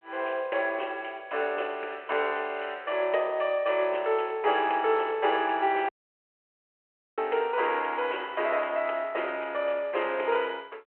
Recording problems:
phone line; 340 Hz to 3.1 kHz, G.726
audio cutting out; at 6 s for 1.5 s

